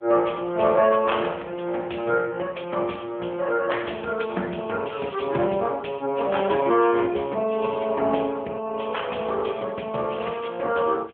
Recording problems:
phone line; 240 Hz to 3.4 kHz, AMR-NB

